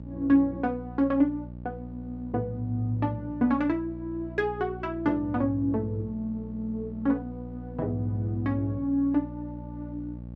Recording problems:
hum; 60 Hz, harmonics up to 600 Hz, SNR 12 dB

